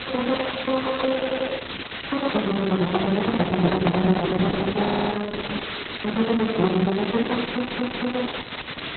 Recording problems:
lossy compression; Opus, log-spectral distance 21 dB, nothing above 4.1 kHz
background hiss; SNR 8 dB
stutter; at 1 s, at 5 s and at 7.5 s
microphone handling noise; from 3 to 4.5 s; peak +8 dB vs average level

